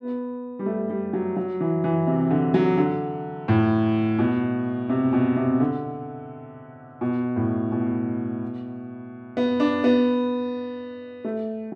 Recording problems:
none

